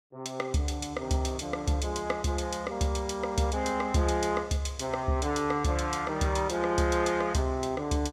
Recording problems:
none

